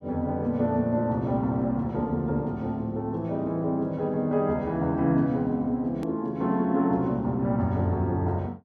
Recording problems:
hard cut with a click; at 6 s

